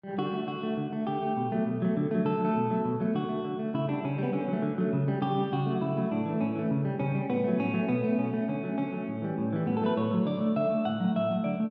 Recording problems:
none

